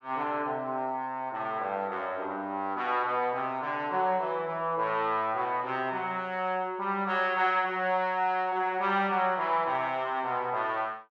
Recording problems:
none

